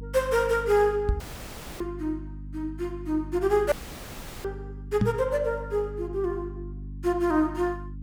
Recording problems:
hum; 50 Hz, harmonics up to 300 Hz, SNR 13 dB
microphone thump; at 1 s and at 5 s; peak +6 dB vs average level
dropout; at 1 s for 0.5 s and at 3.5 s for 0.5 s

